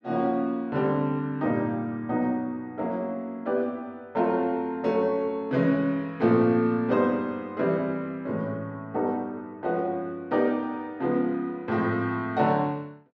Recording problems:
none

